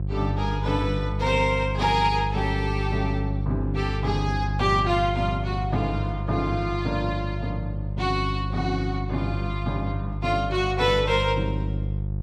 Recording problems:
hum; 50 Hz, harmonics up to 500 Hz, SNR 3 dB

